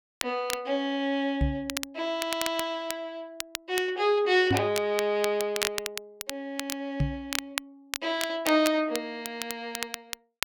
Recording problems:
crackle; vinyl, SNR 7 dB
microphone thump; at 1.5 s, at 4.5 s and at 7 s; peak +5 dB vs average level

